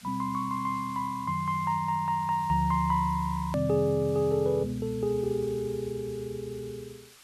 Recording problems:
background hiss; slope +2 dB per octave, SNR 22 dB
edit click; at 3.5 s

